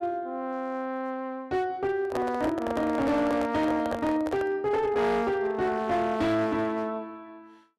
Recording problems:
distorted audio; hard clipping, signal-to-distortion ratio 11 dB
microphone handling noise; from 2 to 4.5 s; peak 0 dB vs average level

